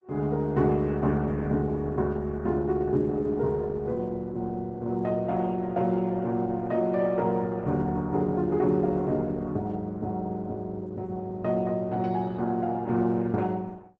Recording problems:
lossy compression; Opus, log-spectral distance 2 dB

